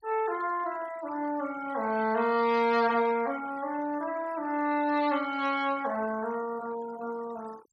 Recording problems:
noise reduction artefacts; signal-to-artefact ratio 18 dB

